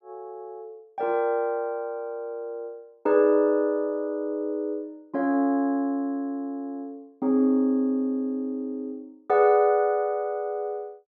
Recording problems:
none

